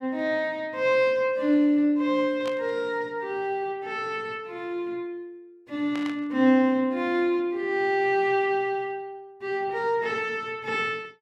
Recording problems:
static burst; at 2.5 s and at 6 s; peak -9 dB vs average level

